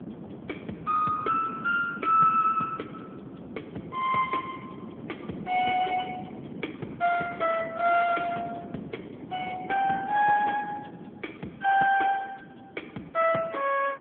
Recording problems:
telephone audio; 220 Hz to 3.3 kHz, AMR-NB
wind on the microphone; below 400 Hz, SNR 16 dB

